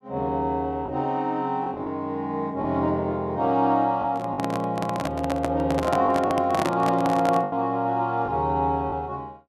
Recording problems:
packet loss; 3% of the sound replaced, filled with the last packet
microphone handling noise; from 4 to 7.5 s; peak +2 dB vs average level

